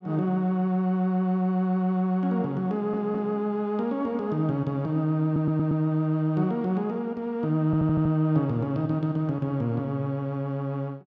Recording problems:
audio stuttering; at 2.5 s, at 5.5 s and at 7.5 s

